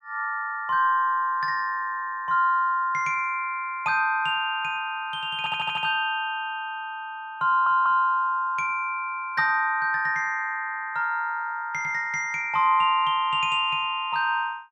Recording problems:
audio stuttering; at 5.5 s and at 7.5 s

